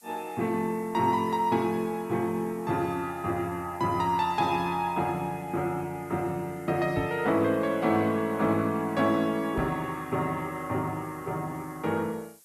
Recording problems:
codec artefacts; Opus, log-spectral distance 2 dB, nothing above 13.1 kHz
hiss; SNR 26 dB
knock on the microphone; at 7 s and at 9.5 s; peak 0 dB vs average level

